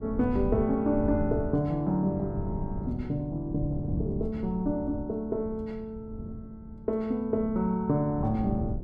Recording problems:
wind on the microphone; below 160 Hz, SNR 8 dB

